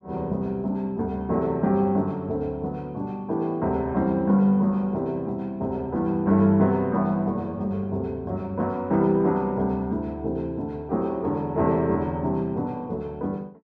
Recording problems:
none

